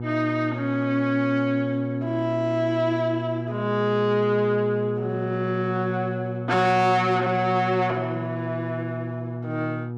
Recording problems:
distortion; soft clipping, signal-to-distortion ratio 11 dB
hum; 60 Hz, harmonics up to 840 Hz, SNR 7 dB

